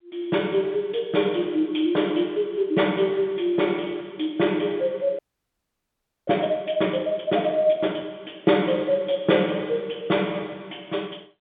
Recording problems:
telephone audio; 150 Hz to 3.6 kHz, G.711
frozen audio; at 5 s for 1 s

